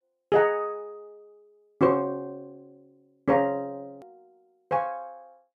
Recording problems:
click at an edit; at 4 s

